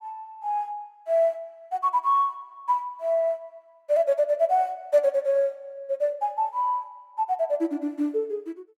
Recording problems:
none

